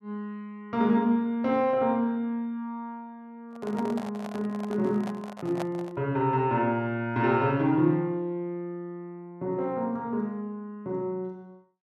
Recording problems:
handling noise; from 3.5 to 6 s; peak -2 dB vs average level

